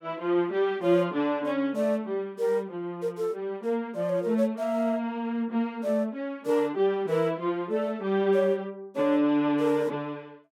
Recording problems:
none

